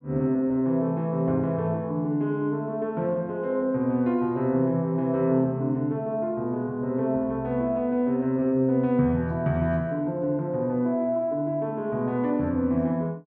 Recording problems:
none

